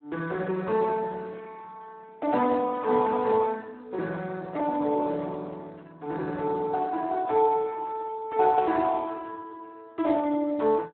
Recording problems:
phone line; 220 Hz to 2 kHz, Speex

